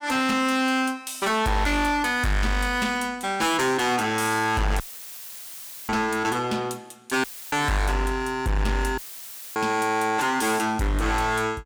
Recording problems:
distorted audio; hard clipping, uneven, signal-to-distortion ratio 8 dB
dropout; at 5 s for 1 s, at 7 s and at 9 s for 0.5 s; filled with static

